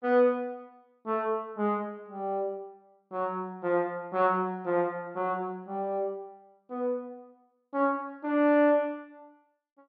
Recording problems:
none

